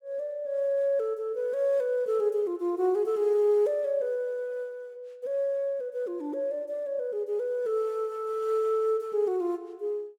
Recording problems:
none

